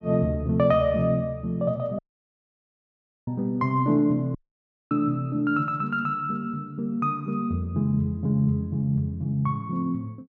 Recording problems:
dropout; at 2 s for 1.5 s and at 4.5 s for 0.5 s

